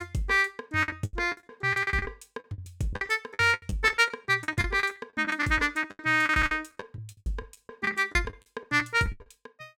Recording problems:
packet loss; 20% of the sound replaced, filled with the last packet

